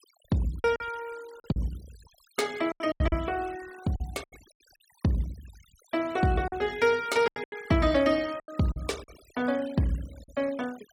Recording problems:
denoising artefacts; signal-to-artefact ratio 20 dB
lost packets; 10% of the sound replaced, filled with silence

